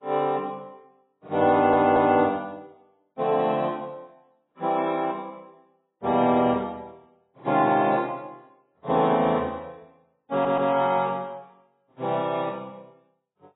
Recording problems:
codec artefacts; MP3, then AAC, log-spectral distance 3 dB, nothing above 3.8 kHz
stutter; at 1.5 s and at 10 s

